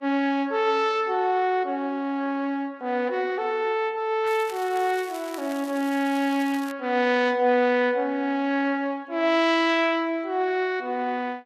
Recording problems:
codec artefacts; Vorbis, log-spectral distance 2 dB
crackle; from 4.5 to 6.5 s; loose cable, SNR 19 dB

